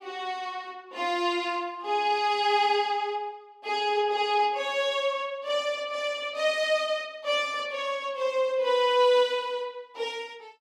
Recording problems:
none

